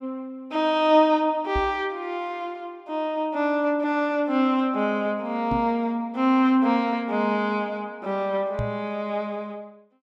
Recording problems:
knock on the microphone; at 1.5 s, at 5.5 s and at 8.5 s; peak -2 dB vs average level

